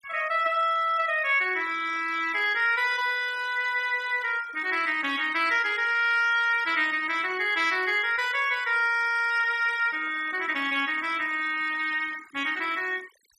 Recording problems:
denoising artefacts; signal-to-artefact ratio 20 dB

